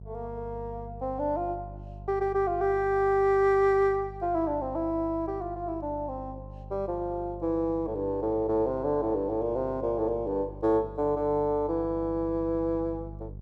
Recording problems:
hum; 50 Hz, harmonics up to 400 Hz, SNR 15 dB

